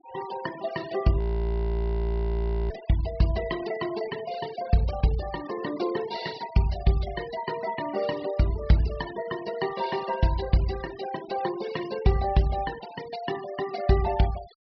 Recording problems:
low-pass filter; nothing above 5.5 kHz
noise reduction artefacts; signal-to-artefact ratio 16 dB
frozen audio; at 1 s for 1.5 s

